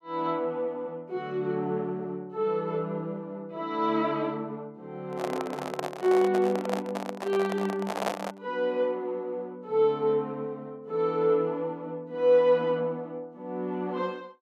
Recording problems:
handling noise; from 5 to 8.5 s; peak +4 dB vs average level

